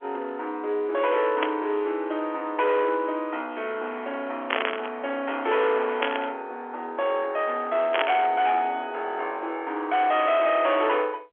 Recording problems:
telephone audio; 300 Hz to 3.4 kHz, G.711
distortion; hard clipping, signal-to-distortion ratio 12 dB
burst of static; 4 times, first at 1.5 s; peak +5 dB vs average level

